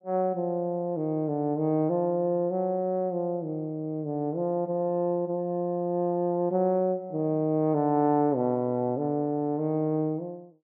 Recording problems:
none

